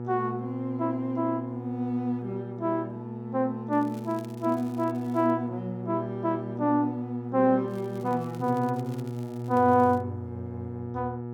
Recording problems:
mains hum; 60 Hz, harmonics up to 1.3 kHz, SNR 8 dB
crackle; from 3.5 to 5.5 s and from 7.5 to 10 s; loose cable, SNR 27 dB

